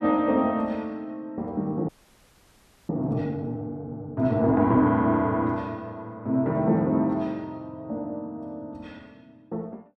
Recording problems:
frozen audio; at 2 s for 1 s

